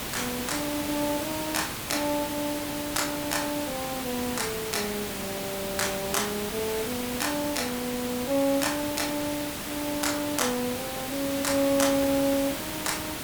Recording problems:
hiss; slope -3 dB per octave, SNR 3 dB

